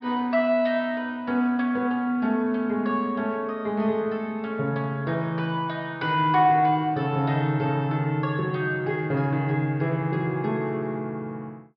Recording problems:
treble missing; nothing above 5.5 kHz

